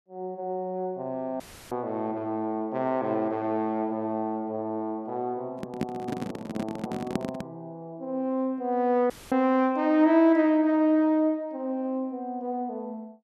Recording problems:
audio cutting out; at 1.5 s and at 9 s; filled with static
handling noise; from 5.5 to 7.5 s; peak +3 dB vs average level

